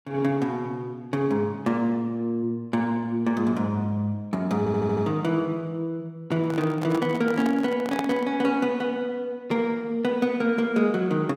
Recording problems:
audio stuttering; at 4.5 s
handling noise; from 6.5 to 8.5 s; peak -1 dB vs average level

